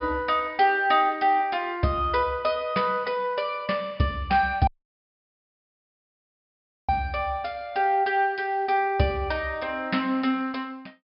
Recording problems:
low-pass filter; nothing above 5.5 kHz
audio cutting out; at 4.5 s for 2 s

